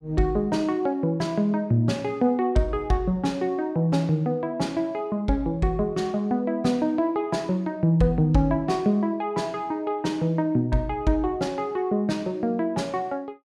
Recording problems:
none

